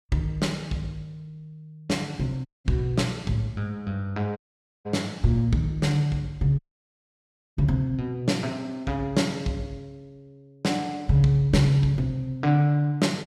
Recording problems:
audio cutting out; at 2.5 s, at 4.5 s and at 6.5 s for 1 s

